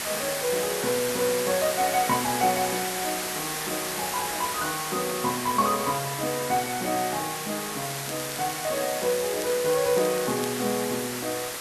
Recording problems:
hiss; slope -1 dB per octave, SNR 3 dB
crackle; from 8 to 11 s; loose cable, SNR 13 dB

